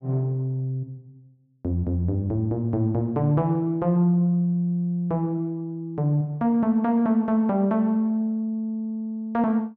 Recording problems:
none

